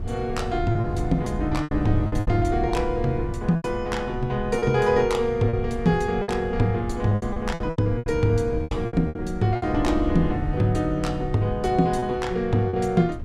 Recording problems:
wind noise; below 110 Hz, SNR 8 dB
lost packets; 9% of the sound replaced, filled with repeated pitch periods

